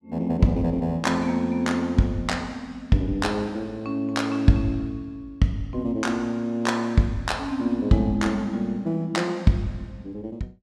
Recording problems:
none

